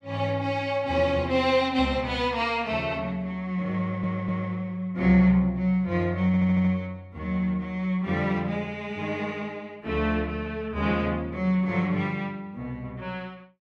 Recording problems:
audio stuttering; at 4 s and at 6.5 s

